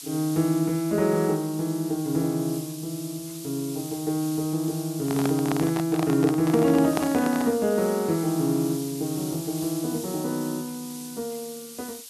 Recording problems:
hiss; SNR 13 dB
microphone handling noise; from 5 to 7.5 s; peak +1 dB vs average level

